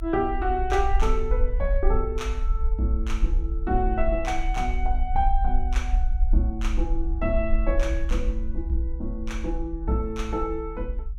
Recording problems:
rumble; below 52 Hz, SNR 0 dB

